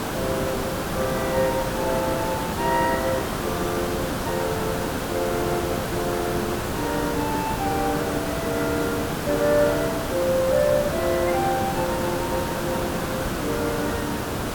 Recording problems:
background hiss; slope -6 dB per octave, SNR 1 dB

